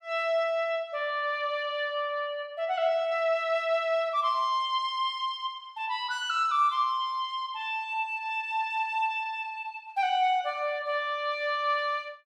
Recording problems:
none

